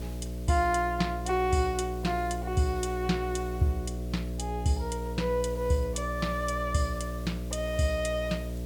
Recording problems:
electrical hum; 60 Hz, harmonics up to 660 Hz, SNR 6 dB
hiss; slope 0 dB per octave, SNR 21 dB

